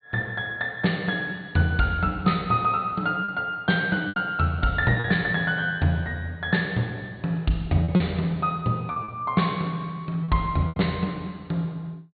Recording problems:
low-pass filter; nothing above 4.5 kHz
packet loss; 4% of the sound replaced, filled with repeated pitch periods

